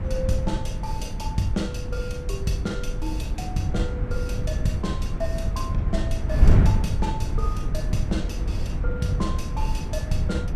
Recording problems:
wind on the microphone; below 100 Hz, SNR -4 dB

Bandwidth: 14.5 kHz